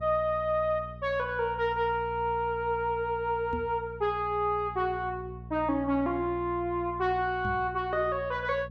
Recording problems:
hum; 60 Hz, harmonics up to 480 Hz, SNR 15 dB
microphone thump; at 3.5 s and at 7.5 s; peak -4 dB vs average level

